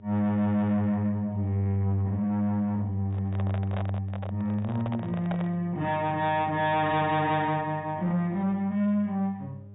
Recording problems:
treble missing; nothing above 4 kHz
distorted audio; soft clipping, signal-to-distortion ratio 11 dB
hum; 50 Hz, harmonics up to 600 Hz, SNR 19 dB
microphone handling noise; from 3 to 5.5 s; peak -3 dB vs average level

